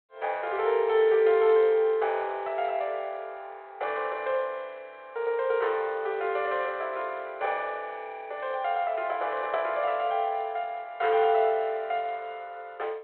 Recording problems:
phone line; 340 Hz to 3.6 kHz, G.726

